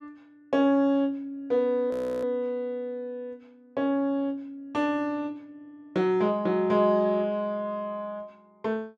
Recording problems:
frozen audio; at 2 s

